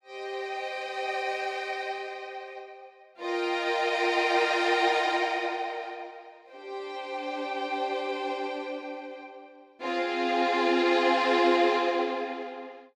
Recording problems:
none

